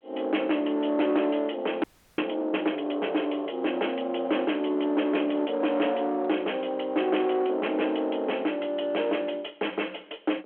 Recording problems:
telephone audio; 240 Hz to 3.3 kHz, G.726
distorted audio; soft clipping, signal-to-distortion ratio 10 dB
audio freezing; at 2 s

